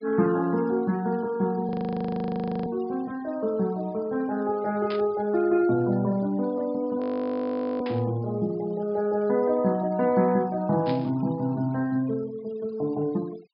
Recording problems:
treble cut off; nothing above 5.5 kHz
denoising artefacts; signal-to-artefact ratio 24 dB
frozen audio; at 1.5 s for 1 s and at 7 s for 1 s
static burst; at 5 s, at 8 s and at 11 s; peak -7 dB vs average level

